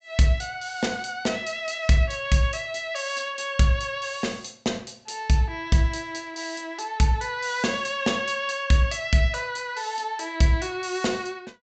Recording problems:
treble missing; nothing above 8 kHz

